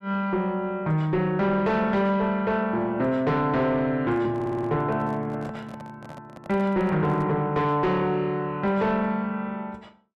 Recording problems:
distortion; soft clipping, signal-to-distortion ratio 11 dB
handling noise; from 4 to 7.5 s; peak -10 dB vs average level
stutter; at 4.5 s

